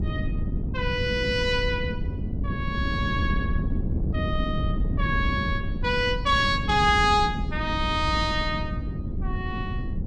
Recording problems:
wind on the microphone; below 180 Hz, SNR 4 dB

